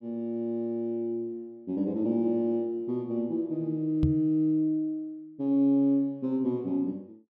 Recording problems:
microphone bump; at 4 s; peak +5 dB vs average level

